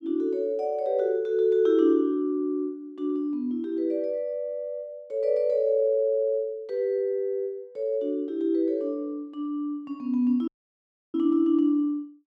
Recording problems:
audio cutting out; at 10 s for 0.5 s

